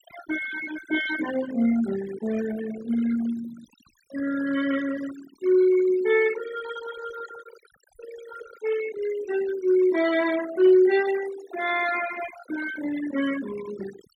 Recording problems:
denoising artefacts; signal-to-artefact ratio 13 dB

